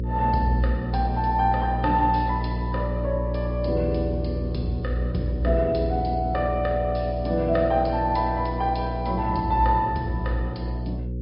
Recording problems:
treble missing; nothing above 5.2 kHz
lossy compression; MP3, log-spectral distance 2 dB
hum; 60 Hz, harmonics up to 540 Hz, SNR 4 dB

